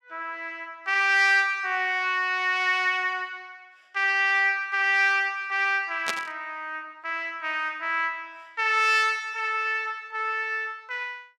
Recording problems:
burst of static; at 6 s; peak 0 dB vs average level

